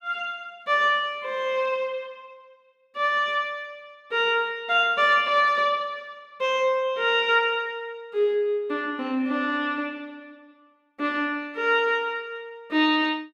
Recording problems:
none

